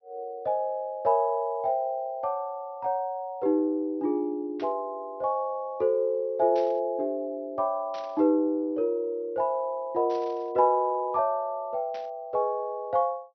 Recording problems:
low-pass filter; nothing above 5.9 kHz
burst of static; 5 times, first at 4.5 s; peak -14 dB vs average level

